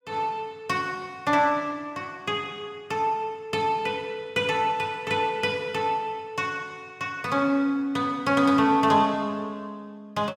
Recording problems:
none

